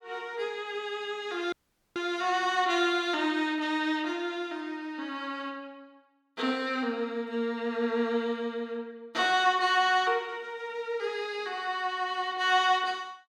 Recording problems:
dropout; at 1.5 s

